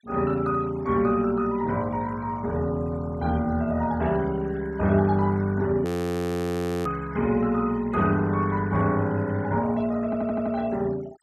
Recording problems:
noise reduction artefacts; signal-to-artefact ratio 23 dB
audio freezing; at 6 s for 1 s
audio stuttering; at 10 s

